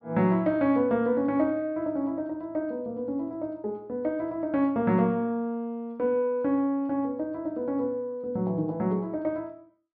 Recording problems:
low-pass filter; nothing above 5.5 kHz

